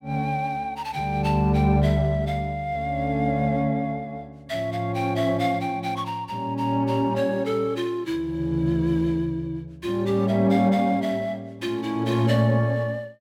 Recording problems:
none

